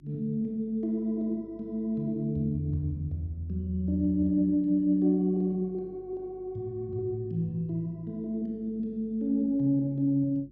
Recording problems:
hum; 50 Hz, harmonics up to 350 Hz, SNR 27 dB

